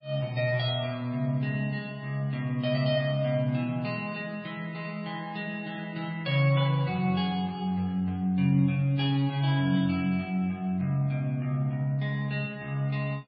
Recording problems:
lossy codec; MP3, log-spectral distance 2 dB, nothing above 4.6 kHz

